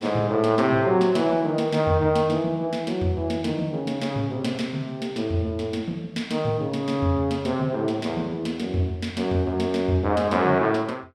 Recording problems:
none

